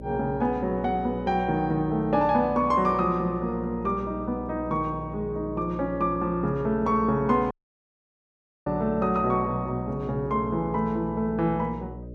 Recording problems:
mains hum; 60 Hz, harmonics up to 600 Hz, SNR 14 dB
dropout; at 7.5 s for 1 s

